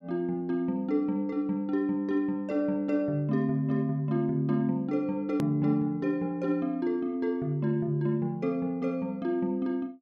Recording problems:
edit click; at 5.5 s

